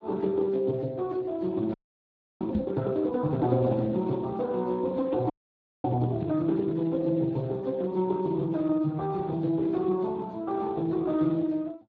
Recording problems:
lossy compression; Speex, log-spectral distance 2 dB
audio freezing; at 1.5 s for 0.5 s and at 5.5 s for 0.5 s
microphone bump; at 2.5 s; peak +2 dB vs average level

